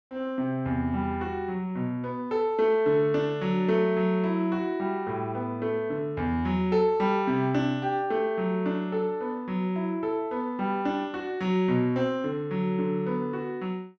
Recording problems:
none

